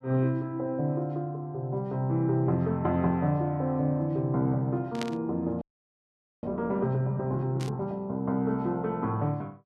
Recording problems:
burst of static; at 5 s and at 7.5 s; peak -3 dB vs average level
frozen audio; at 5.5 s for 1 s

